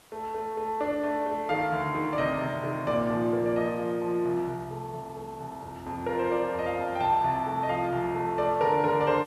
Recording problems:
background hiss; slope -3 dB per octave, SNR 27 dB

